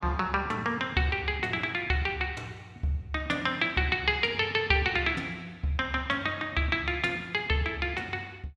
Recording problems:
none

